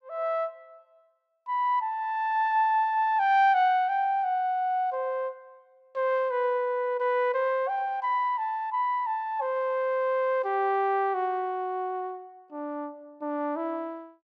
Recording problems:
none

